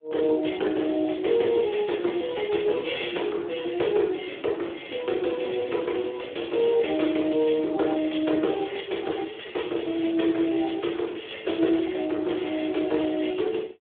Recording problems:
phone line; 280 Hz to 3.5 kHz, Speex

